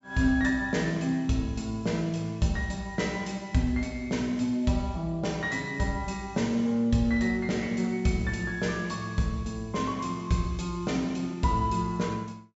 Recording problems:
low-pass filter; nothing above 8 kHz

